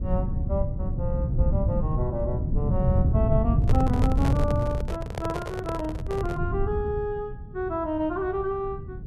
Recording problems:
low-frequency rumble; below 130 Hz, SNR -3 dB
microphone handling noise; from 3.5 to 6.5 s; peak +3 dB vs average level

